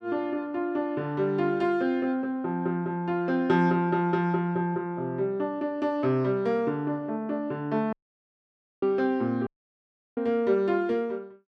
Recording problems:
audio cutting out; at 8 s for 1 s and at 9.5 s for 0.5 s

